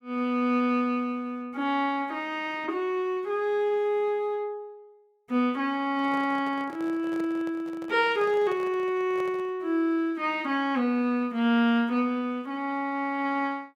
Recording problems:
microphone handling noise; from 6 to 9.5 s; peak -11 dB vs average level

